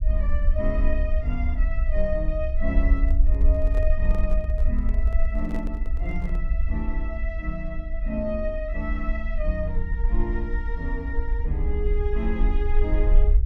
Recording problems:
rumble; below 54 Hz, SNR -5 dB
microphone handling noise; from 3 to 6.5 s; peak -4 dB vs average level

